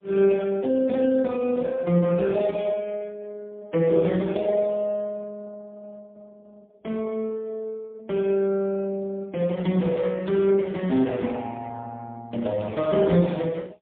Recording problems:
phone line; 130 Hz to 3.6 kHz, AMR-NB, then MP3

